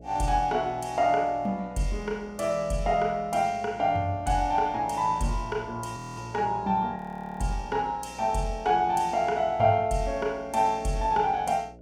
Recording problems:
hum; 60 Hz, harmonics up to 660 Hz, SNR 22 dB
frozen audio; at 6 s and at 7 s

